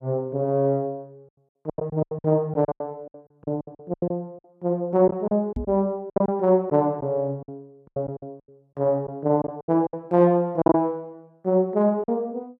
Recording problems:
packet loss; 13% of the sound replaced, filled with silence
microphone thump; at 5.5 s; peak -3 dB vs average level

